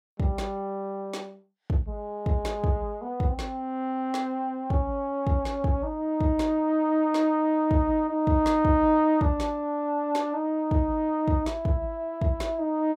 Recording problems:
none

